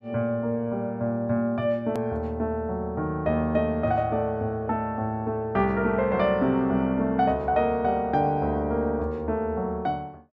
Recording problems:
edit click; at 2 s

